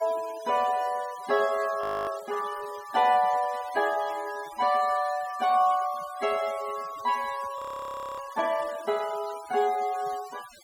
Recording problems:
denoising artefacts; signal-to-artefact ratio 18 dB
audio freezing; at 2 s and at 7.5 s for 0.5 s

